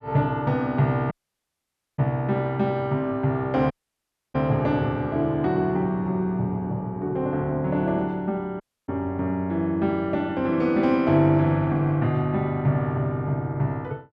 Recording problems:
dropout; at 1 s for 1 s, at 3.5 s for 0.5 s and at 8.5 s

